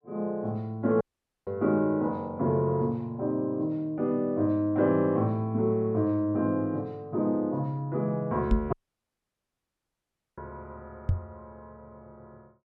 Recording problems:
audio cutting out; at 1 s and at 8.5 s for 1.5 s
microphone bump; at 8.5 s and at 11 s; peak +6 dB vs average level

